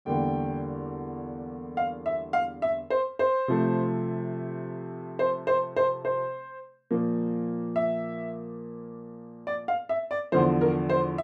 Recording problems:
none

